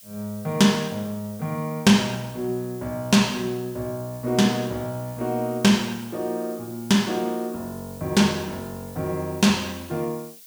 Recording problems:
hiss; slope +6 dB per octave, SNR 20 dB

